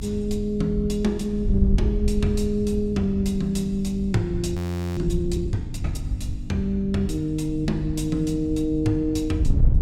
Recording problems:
hum; 50 Hz, harmonics up to 300 Hz, SNR 12 dB
wind noise; below 86 Hz, SNR 5 dB
frozen audio; at 4.5 s

